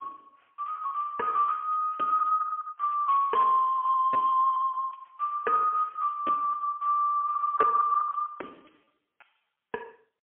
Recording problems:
phone line; 280 Hz to 3.2 kHz, AMR-NB, then MP3
lost packets; 17% of the sound replaced, filled with repeated pitch periods

